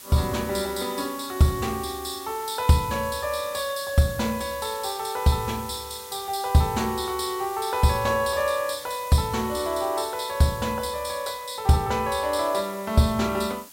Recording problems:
background hiss; slope +1 dB per octave, SNR 15 dB

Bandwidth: 16 kHz